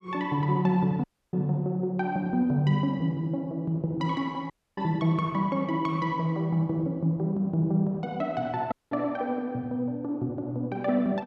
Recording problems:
dropout; at 1 s, at 4.5 s and at 8.5 s

